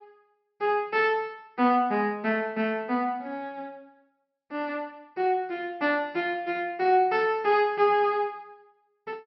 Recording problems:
low-pass filter; nothing above 5.7 kHz

